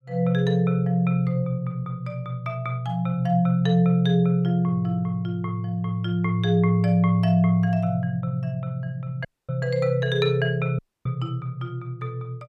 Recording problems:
audio cutting out; at 9.5 s and at 11 s

